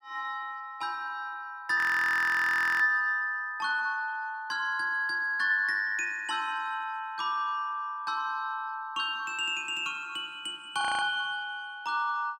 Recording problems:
frozen audio; at 2 s for 1 s and at 11 s

